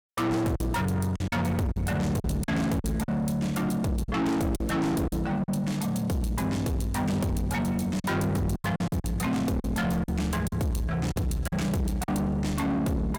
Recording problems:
distortion; soft clipping, signal-to-distortion ratio 7 dB
packet loss; 7% of the sound replaced, filled with silence

